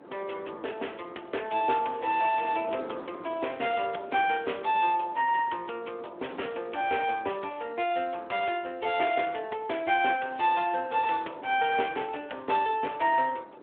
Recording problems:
phone line; 320 Hz to 3.4 kHz, Speex
wind on the microphone; below 690 Hz, SNR 19 dB

